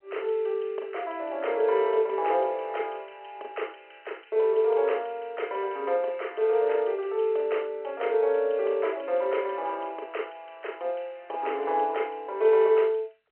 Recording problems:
phone line; 340 Hz to 3.2 kHz, G.711

